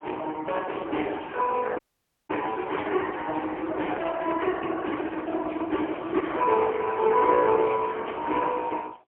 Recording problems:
phone line; 260 Hz to 3.1 kHz, AMR-NB, then MP3
audio cutting out; at 2 s for 0.5 s

